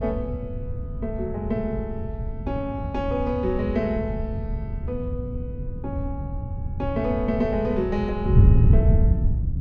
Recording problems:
wind noise; below 120 Hz, SNR -2 dB

